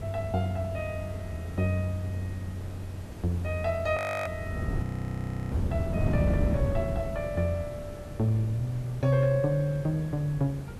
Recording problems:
hiss; slope -6 dB per octave, SNR 16 dB
wind noise; below 200 Hz, SNR 5 dB
audio freezing; at 4 s and at 5 s for 0.5 s

